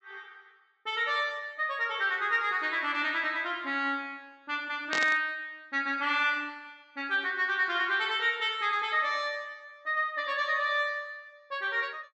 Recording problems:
treble missing; nothing above 7.9 kHz
static burst; at 5 s; peak 0 dB vs average level

